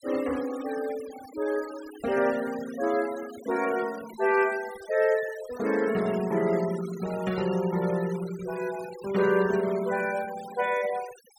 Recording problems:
denoising artefacts; signal-to-artefact ratio 16 dB

